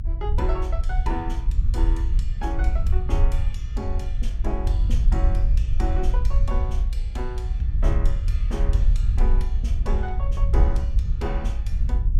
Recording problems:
rumble; below 60 Hz, SNR -9 dB

